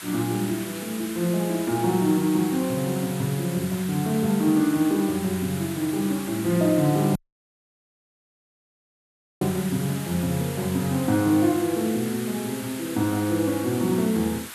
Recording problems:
background hiss; SNR 12 dB
dropout; at 7 s for 2.5 s

